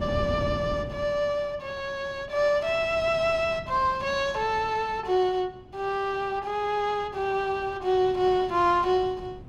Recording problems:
wind noise; below 280 Hz, SNR 15 dB

